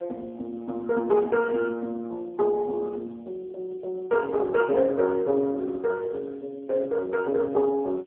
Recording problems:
phone line; 300 Hz to 2.3 kHz, AMR-NB
hiss; SNR 43 dB

